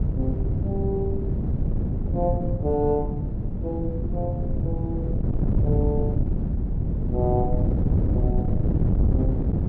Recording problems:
wind on the microphone; below 170 Hz, SNR -5 dB

